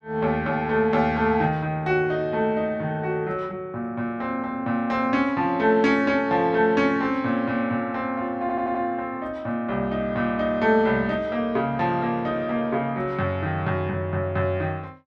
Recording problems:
audio stuttering; at 8.5 s

